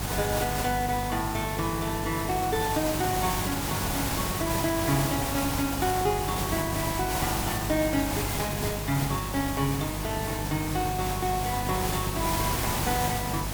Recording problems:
electrical hum; 50 Hz, harmonics up to 700 Hz, SNR 6 dB
background hiss; SNR 1 dB

